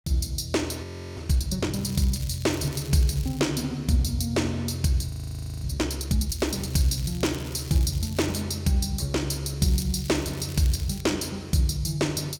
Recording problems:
audio freezing; at 1 s and at 5 s for 0.5 s
crackle; from 2 to 3.5 s, from 6.5 to 8.5 s and from 9.5 to 11 s; loose cable, SNR 17 dB

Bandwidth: 17 kHz